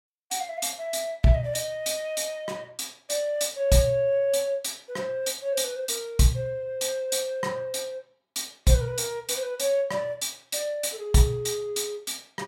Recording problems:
none

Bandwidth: 16 kHz